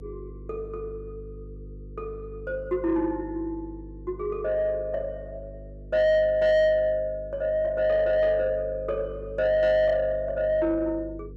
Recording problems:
distortion; soft clipping, signal-to-distortion ratio 11 dB
hum; 50 Hz, harmonics up to 500 Hz, SNR 17 dB

